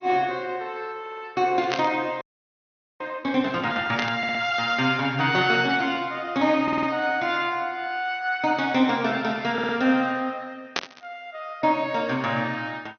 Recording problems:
lossy codec; MP2, log-spectral distance 3 dB, nothing above 6.3 kHz
audio stuttering; 4 times, first at 1 s
static burst; at 1.5 s, at 4 s and at 11 s; peak +2 dB vs average level
frozen audio; at 2 s for 1 s

